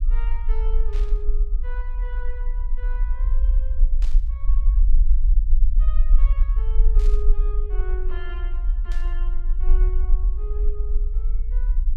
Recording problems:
low-frequency rumble; below 40 Hz, strongest tone 20 Hz, SNR -18 dB
burst of static; 4 times, first at 1 s; peak +1 dB vs average level

